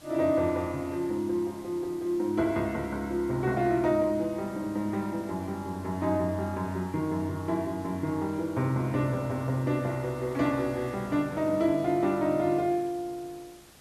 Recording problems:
hiss; slope -2 dB per octave, SNR 23 dB

